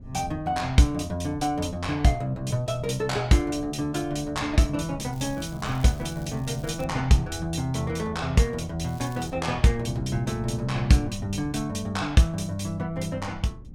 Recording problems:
wind on the microphone; below 160 Hz, SNR 16 dB
crackling; from 5 to 7 s and at 9 s; loose cable, SNR 25 dB

